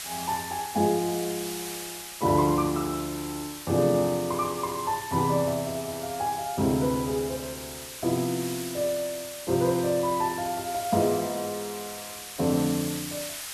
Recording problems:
background hiss; slope +3 dB per octave, SNR 9 dB

